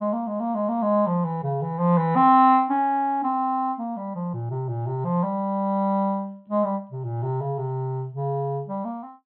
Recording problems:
low-pass filter; nothing above 4 kHz

